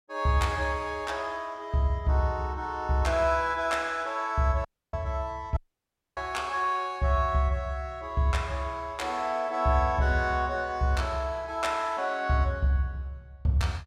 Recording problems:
audio cutting out; at 4.5 s and at 5.5 s for 0.5 s

